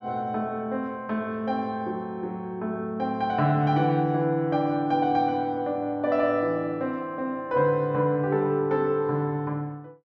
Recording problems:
none

